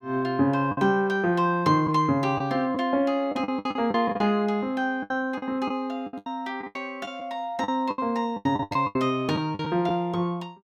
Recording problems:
lost packets; 12% of the sound replaced, filled with the last packet

